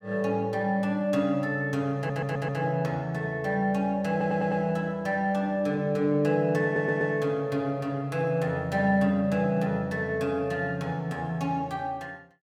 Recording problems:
stutter; at 2 s, at 4 s and at 6.5 s

